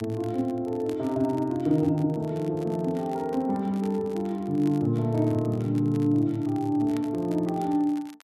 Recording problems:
crackling; vinyl, SNR 26 dB

